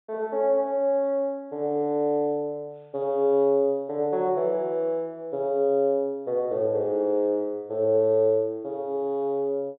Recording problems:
low-pass filter; nothing above 4 kHz

